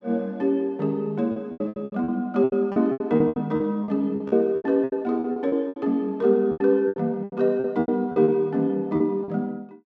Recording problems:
lost packets; 17% of the sound replaced, filled with repeated pitch periods

